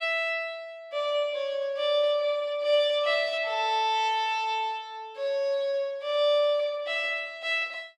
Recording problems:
none

